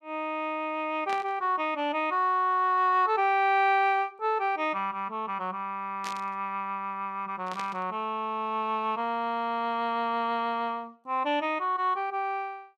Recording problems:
burst of static; at 1 s, at 6 s and at 7.5 s; peak -6 dB vs average level

